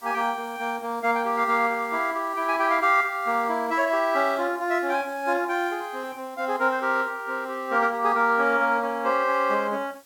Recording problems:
hiss; slope -1 dB per octave, SNR 27 dB

